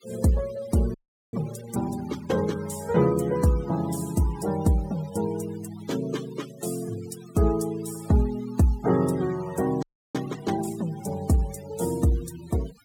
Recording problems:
denoising artefacts; signal-to-artefact ratio 17 dB
frozen audio; at 1 s and at 10 s

